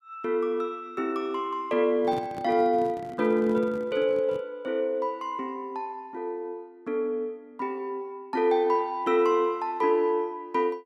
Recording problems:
microphone handling noise; from 2 to 4.5 s; peak -7 dB vs average level

